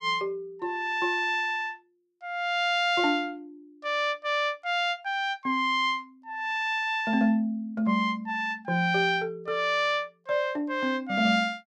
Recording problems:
none

